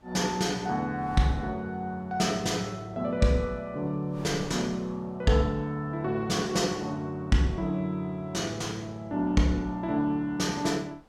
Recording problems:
wind noise; below 810 Hz, SNR 25 dB

